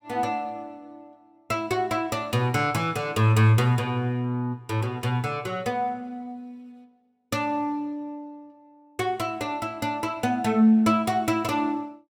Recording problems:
none

